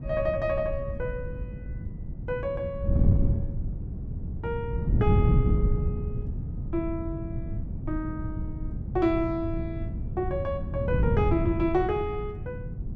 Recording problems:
wind on the microphone; below 150 Hz, SNR -1 dB

